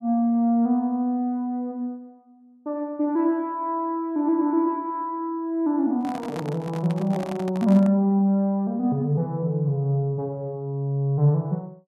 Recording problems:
handling noise; from 6 to 8 s; peak -7 dB vs average level

